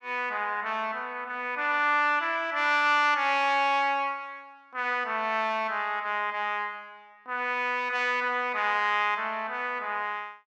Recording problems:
none

